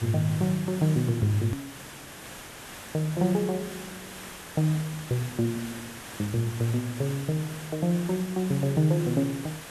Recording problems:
background hiss; SNR 13 dB
edit click; at 1.5 s

